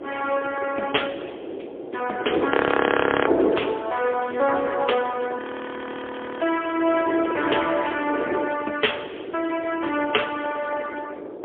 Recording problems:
phone line; 300 Hz to 3.3 kHz, AMR-NB, then MP3
wind noise; below 800 Hz, SNR 3 dB
frozen audio; at 2.5 s for 1 s and at 5.5 s for 1 s
crackling; from 3.5 to 5 s; loose cable, SNR 23 dB

